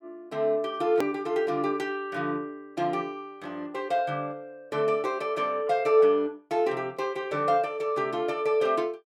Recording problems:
edit click; at 1 s

